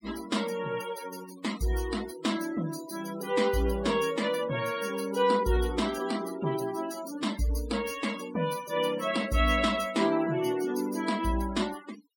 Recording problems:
noise reduction artefacts; signal-to-artefact ratio 14 dB

